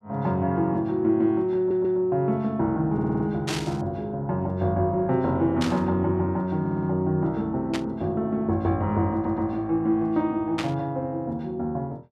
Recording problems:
stutter; 4 times, first at 1.5 s
static burst; 4 times, first at 3.5 s; peak -1 dB vs average level

